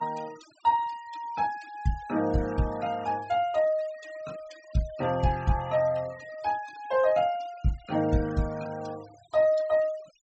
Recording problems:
low-pass filter; nothing above 8 kHz
noise reduction artefacts; signal-to-artefact ratio 22 dB

